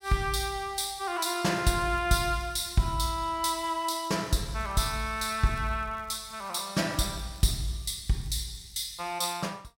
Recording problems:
crackle; from 1 to 3 s, from 3.5 to 6.5 s and from 7 to 9 s; loose cable, SNR 28 dB

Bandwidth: 16.5 kHz